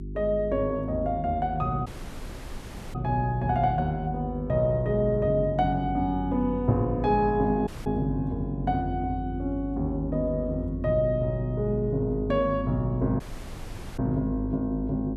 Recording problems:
hum; 50 Hz, harmonics up to 400 Hz, SNR 9 dB
audio cutting out; at 2 s for 1 s, at 7.5 s and at 13 s for 1 s

